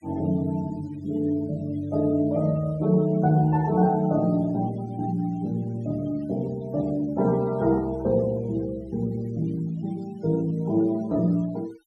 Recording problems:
noise reduction artefacts; signal-to-artefact ratio 25 dB

